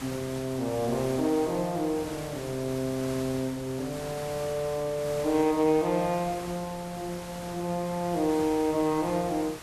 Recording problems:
hiss; slope -3 dB per octave, SNR 12 dB

